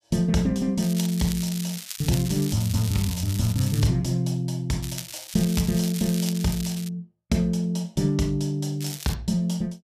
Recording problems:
crackling; from 1 to 4 s, from 5 to 7 s and at 9 s; loose cable, SNR 10 dB

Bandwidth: 14.5 kHz